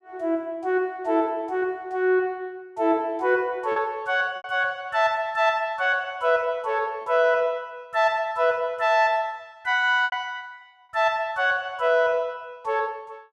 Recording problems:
packet loss; 2% of the sound replaced, filled with repeated pitch periods

